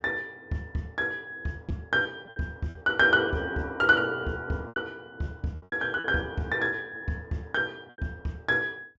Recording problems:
low-pass filter; nothing above 8 kHz
lost packets; 7% of the sound replaced, filled with repeated pitch periods

